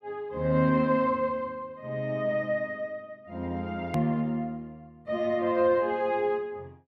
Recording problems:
edit click; at 4 s

